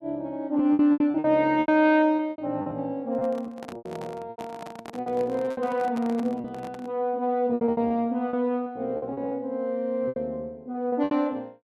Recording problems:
lost packets; 13% of the sound replaced, filled with repeated pitch periods
handling noise; from 3 to 7 s; peak -9 dB vs average level

